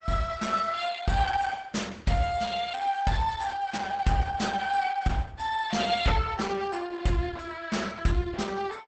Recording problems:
lossy compression; Opus, log-spectral distance 5 dB, nothing above 8 kHz

